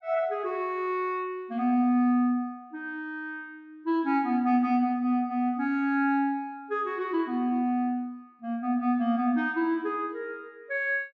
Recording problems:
treble cut off; nothing above 7.9 kHz

